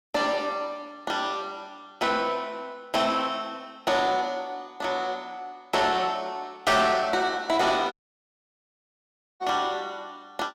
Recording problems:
distorted audio; soft clipping, signal-to-distortion ratio 12 dB
audio cutting out; at 8 s for 1.5 s

